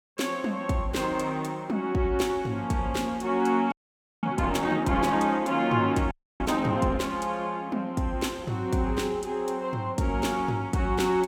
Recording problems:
frozen audio; at 3.5 s for 0.5 s and at 6 s

